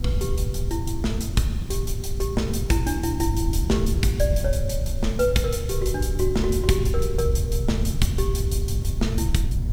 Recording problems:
mains hum; 60 Hz, harmonics up to 720 Hz, SNR 12 dB
background hiss; SNR 24 dB
wind on the microphone; below 92 Hz, SNR 0 dB

